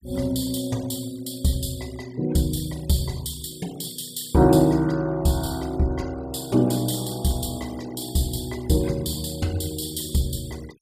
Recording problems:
noise reduction artefacts; signal-to-artefact ratio 22 dB

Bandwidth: 15 kHz